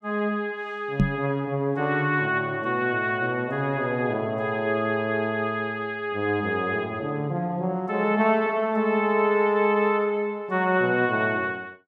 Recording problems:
microphone thump; at 1 s; peak +7 dB vs average level

